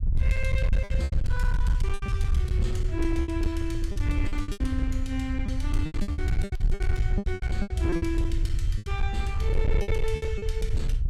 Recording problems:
distorted audio; hard clipping, uneven, signal-to-distortion ratio 11 dB
rumble; below 78 Hz, SNR -4 dB
packet loss; 14% of the sound replaced, filled with repeated pitch periods

